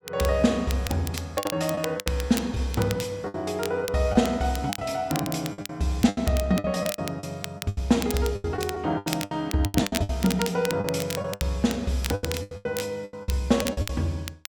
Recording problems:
crackle; vinyl, SNR 10 dB
lost packets; 15% of the sound replaced, filled with the last packet

